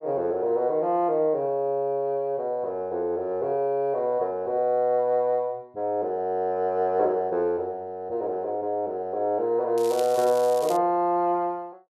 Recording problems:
crackle; from 10 to 11 s; loose cable, SNR 15 dB

